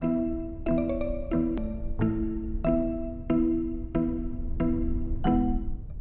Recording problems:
treble missing; nothing above 4 kHz
low-frequency rumble; below 70 Hz, SNR 9 dB
edit click; at 1.5 s

